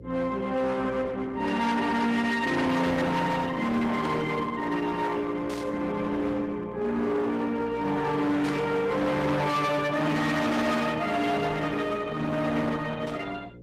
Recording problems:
codec artefacts; Opus, log-spectral distance 3 dB, nothing above 15.6 kHz
distortion; hard clipping, uneven, signal-to-distortion ratio 6 dB
electrical hum; 60 Hz, harmonics up to 540 Hz, SNR 20 dB
static burst; 5 times, first at 1.5 s; peak -10 dB vs average level

